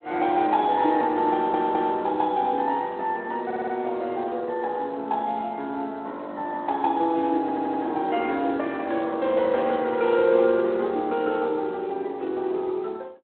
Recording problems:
telephone audio; 240 Hz to 3.8 kHz, Speex
audio stuttering; at 1.5 s, at 3.5 s and at 7.5 s

